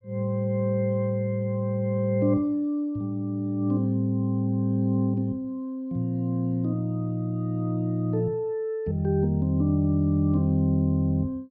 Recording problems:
low-pass filter; nothing above 5.5 kHz

